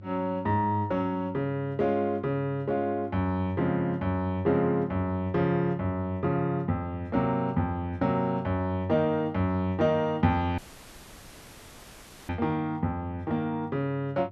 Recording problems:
hum; 50 Hz, harmonics up to 500 Hz, SNR 18 dB
audio cutting out; at 11 s for 1.5 s

